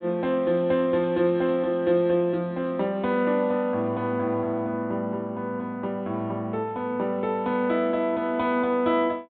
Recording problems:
treble missing; nothing above 4 kHz

